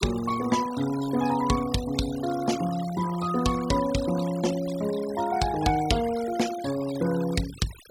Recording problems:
denoising artefacts; signal-to-artefact ratio 14 dB

